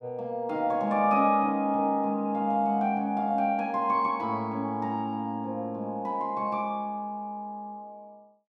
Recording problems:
none

